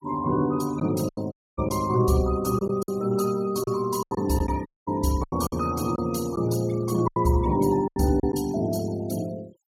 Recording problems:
noise reduction artefacts; signal-to-artefact ratio 20 dB
lost packets; 7% of the sound replaced, filled with silence
audio cutting out; at 1.5 s and at 4.5 s

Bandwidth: 16 kHz